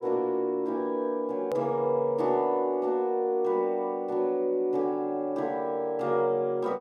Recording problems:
edit click; at 1.5 s

